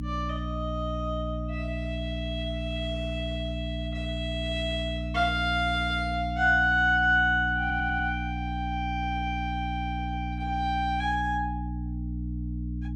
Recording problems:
hum; 60 Hz, harmonics up to 300 Hz, SNR 5 dB
stutter; at 7.5 s

